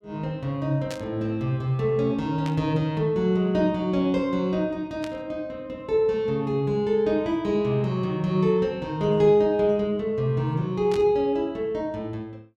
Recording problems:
burst of static; 4 times, first at 1 s; peak -8 dB vs average level

